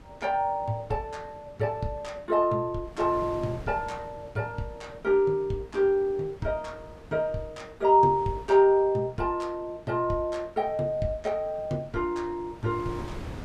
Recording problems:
wind noise; below 540 Hz, SNR 19 dB

